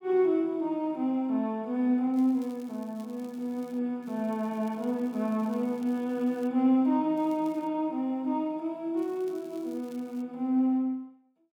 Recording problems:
crackle; 4 times, first at 2 s; loose cable, SNR 29 dB

